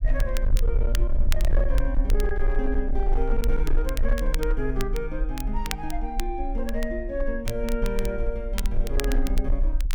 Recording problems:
distorted audio; hard clipping, uneven, signal-to-distortion ratio 11 dB
rumble; below 44 Hz, SNR -3 dB
crackle; vinyl, SNR 9 dB

